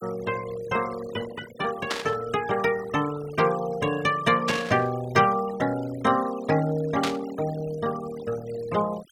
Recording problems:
denoising artefacts; signal-to-artefact ratio 15 dB
burst of static; at 2 s, at 4.5 s and at 7 s; peak +2 dB vs average level

